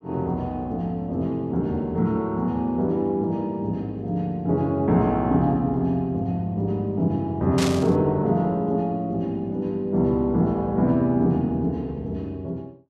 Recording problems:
burst of static; at 7.5 s; peak 0 dB vs average level

